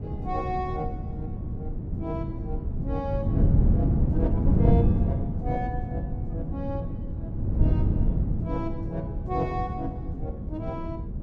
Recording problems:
wind noise; below 170 Hz, SNR -6 dB

